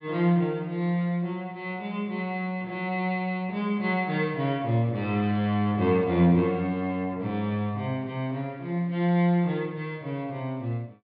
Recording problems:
low-pass filter; nothing above 5 kHz

